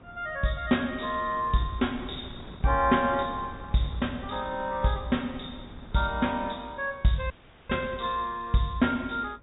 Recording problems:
treble missing; nothing above 4 kHz
wind on the microphone; below 400 Hz, SNR 18 dB
dropout; at 7.5 s

